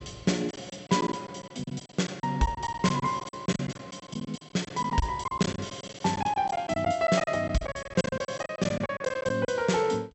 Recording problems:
treble cut off; nothing above 8 kHz
packet loss; 15% of the sound replaced, filled with silence

